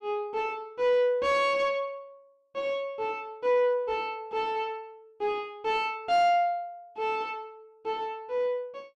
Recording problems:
distorted audio; soft clipping, signal-to-distortion ratio 9 dB

